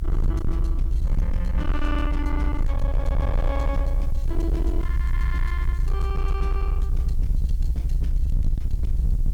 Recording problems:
distortion; hard clipping, signal-to-distortion ratio 7 dB
hiss; slope +2 dB per octave, SNR 25 dB
low-frequency rumble; below 60 Hz, SNR -7 dB

